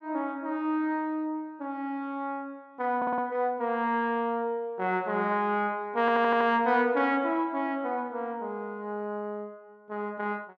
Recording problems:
stutter; at 3 s and at 6 s

